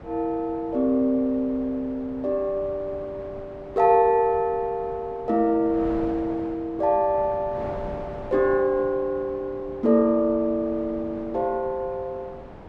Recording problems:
wind noise; below 740 Hz, SNR 17 dB

